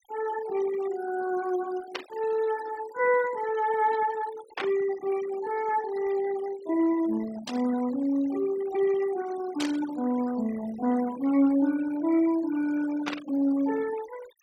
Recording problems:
denoising artefacts; signal-to-artefact ratio 16 dB
static burst; 5 times, first at 2 s; peak -1 dB vs average level

